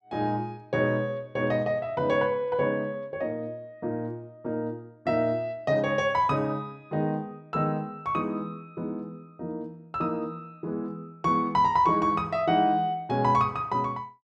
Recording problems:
none

